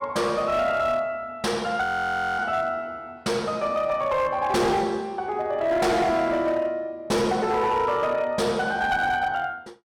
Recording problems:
distorted audio; hard clipping, signal-to-distortion ratio 11 dB
frozen audio; at 2 s for 0.5 s

